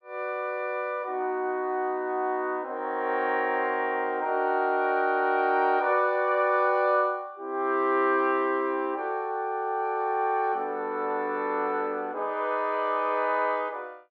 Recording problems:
none

